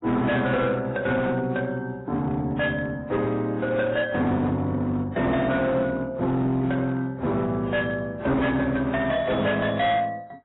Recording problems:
codec artefacts; AAC, then AAC, log-spectral distance 2 dB, nothing above 3.7 kHz
distorted audio; hard clipping, signal-to-distortion ratio 10 dB

